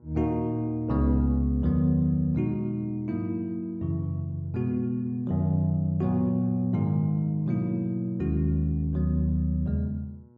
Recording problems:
hum; 60 Hz, harmonics up to 1.1 kHz, SNR 30 dB

